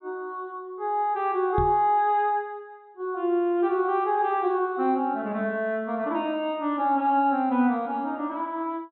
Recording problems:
treble cut off; nothing above 4.1 kHz
microphone bump; at 1.5 s; peak 0 dB vs average level

